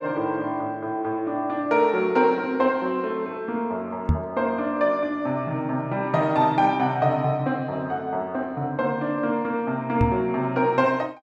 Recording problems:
microphone thump; at 4 s and at 10 s; peak +6 dB vs average level

